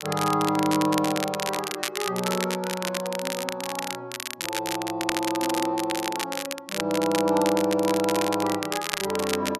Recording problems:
crackle; vinyl, SNR 5 dB

